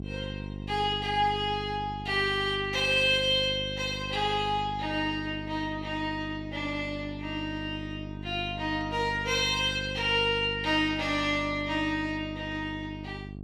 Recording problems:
electrical hum; 50 Hz, harmonics up to 750 Hz, SNR 11 dB

